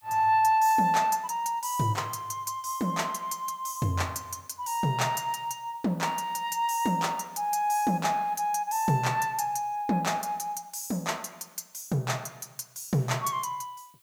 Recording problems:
background hiss; SNR 30 dB

